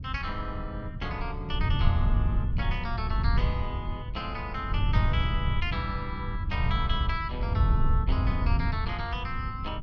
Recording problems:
wind on the microphone; below 100 Hz, SNR -4 dB

